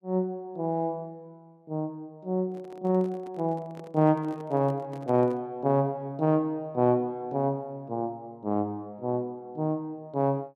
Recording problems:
handling noise; from 2.5 to 5.5 s; peak -11 dB vs average level

